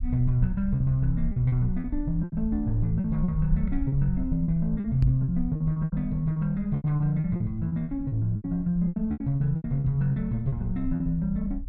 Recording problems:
rumble; below 56 Hz, SNR 10 dB
lost packets; 13% of the sound replaced, filled with repeated pitch periods
microphone thump; at 5 s; peak +5 dB vs average level

